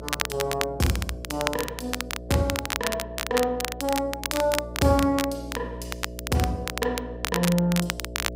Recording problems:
electrical hum; 60 Hz, harmonics up to 660 Hz, SNR 12 dB
crackle; vinyl, SNR 4 dB

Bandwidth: 15.5 kHz